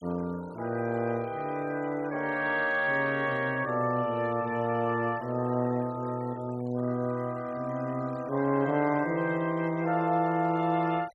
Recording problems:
noise reduction artefacts; signal-to-artefact ratio 23 dB

